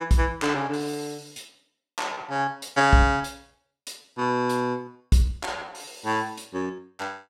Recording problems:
lost packets; 9% of the sound replaced, filled with repeated pitch periods

